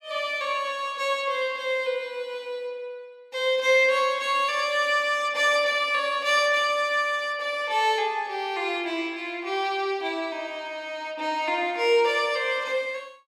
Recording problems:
none

